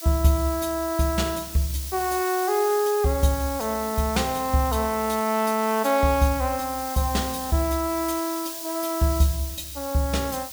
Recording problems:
hiss; SNR 10 dB

